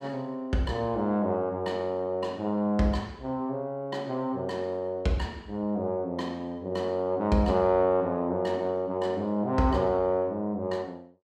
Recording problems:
none

